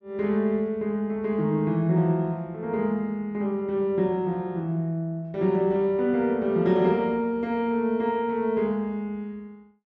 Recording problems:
none

